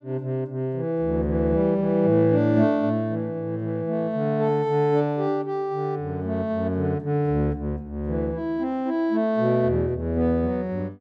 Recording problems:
none

